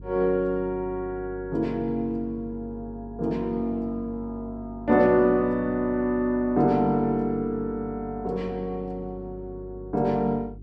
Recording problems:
mains hum; 50 Hz, harmonics up to 400 Hz, SNR 17 dB

